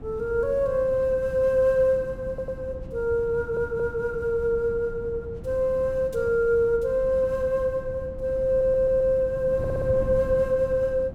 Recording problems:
wind on the microphone; below 190 Hz, SNR 14 dB
stutter; 4 times, first at 2.5 s

